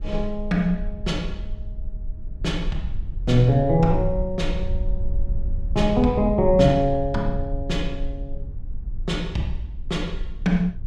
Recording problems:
low-frequency rumble; below 54 Hz, strongest tone 20 Hz, SNR 8 dB

